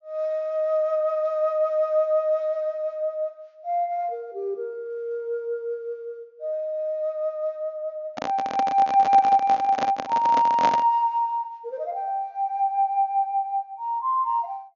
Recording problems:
treble cut off; nothing above 6.9 kHz
microphone handling noise; from 8 to 11 s; peak +1 dB vs average level

